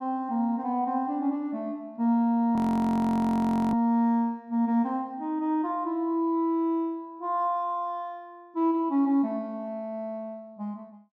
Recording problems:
frozen audio; at 2.5 s for 1 s

